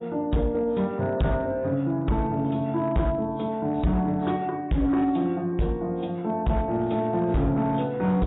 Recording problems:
lossy codec; AAC, log-spectral distance 2 dB, nothing above 3.8 kHz
distorted audio; hard clipping, signal-to-distortion ratio 10 dB

